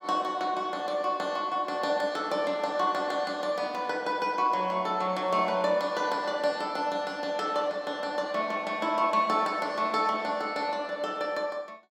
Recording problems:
none

